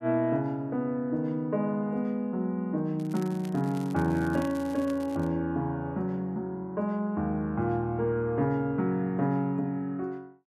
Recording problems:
crackle; from 3 to 5.5 s; loose cable, SNR 22 dB

